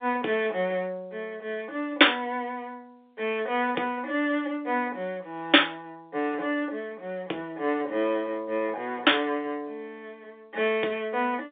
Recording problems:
telephone audio; 300 Hz to 3.6 kHz, G.711

